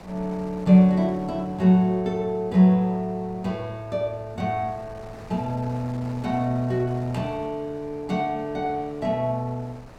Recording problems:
wind noise; below 900 Hz, SNR 21 dB

